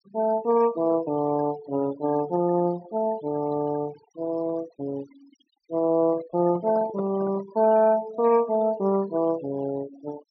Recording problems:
treble missing; nothing above 6 kHz
noise reduction artefacts; signal-to-artefact ratio 19 dB
handling noise; from 6 to 7.5 s; peak -8 dB vs average level

